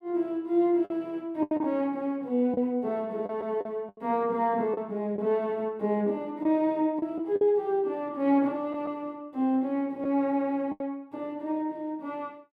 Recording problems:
lost packets; 5% of the sound replaced, filled with the last packet

